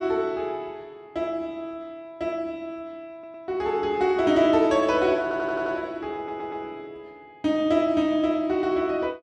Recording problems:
audio stuttering; at 3 s, at 5 s and at 6 s

